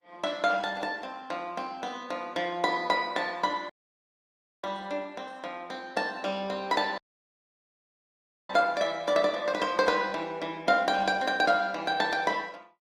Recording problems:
codec artefacts; Opus, log-spectral distance 3 dB, nothing above 19.5 kHz
dropout; at 3.5 s for 1 s and at 7 s for 1.5 s

